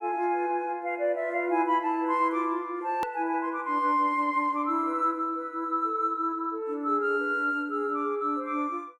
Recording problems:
edit click; at 3 s

